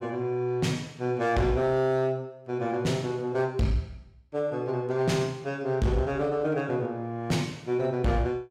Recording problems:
distorted audio; hard clipping, signal-to-distortion ratio 11 dB

